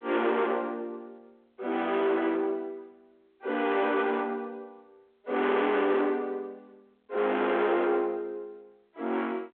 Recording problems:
telephone audio; 260 Hz to 3.5 kHz, G.726
distortion; soft clipping, signal-to-distortion ratio 6 dB

